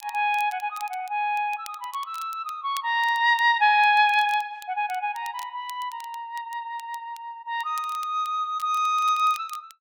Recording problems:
crackling; vinyl, SNR 23 dB

